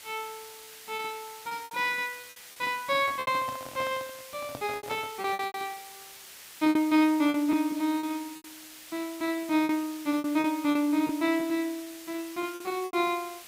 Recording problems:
background hiss; slope +2 dB per octave, SNR 16 dB
packet loss; 11% of the sound replaced, filled with repeated pitch periods
handling noise; from 3 to 5.5 s; peak -6 dB vs average level

